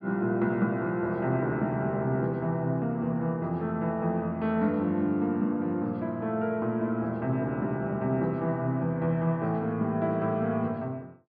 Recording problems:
treble cut off; nothing above 5.5 kHz

